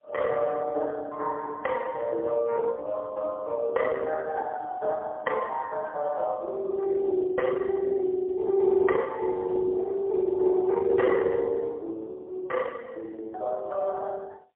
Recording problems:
telephone audio; 280 Hz to 3.1 kHz, AMR-NB, then MP3

